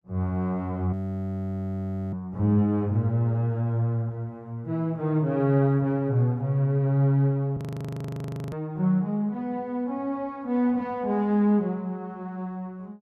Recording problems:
audio freezing; at 1 s for 1 s and at 7.5 s for 1 s

